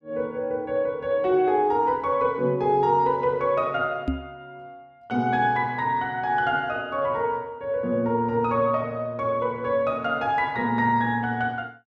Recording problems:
knock on the microphone; at 4 s; peak +2 dB vs average level

